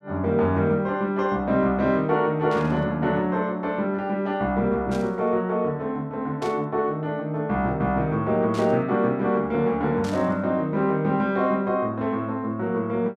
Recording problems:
burst of static; 5 times, first at 2.5 s; peak -11 dB vs average level

